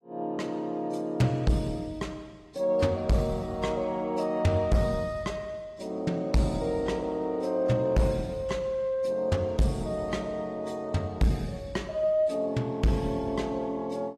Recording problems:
lossy codec; AAC, log-spectral distance 2 dB
distortion; hard clipping, signal-to-distortion ratio 7 dB

